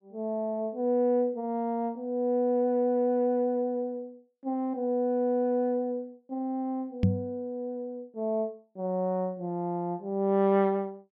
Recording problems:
microphone bump; at 7 s; peak +8 dB vs average level

